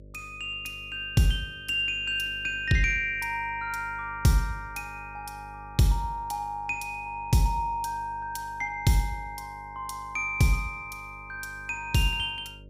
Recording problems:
mains hum; 50 Hz, harmonics up to 600 Hz, SNR 20 dB

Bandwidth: 15.5 kHz